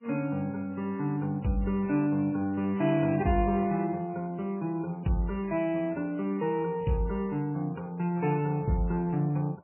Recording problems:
lossy compression; MP3, log-spectral distance 3 dB, nothing above 2.8 kHz

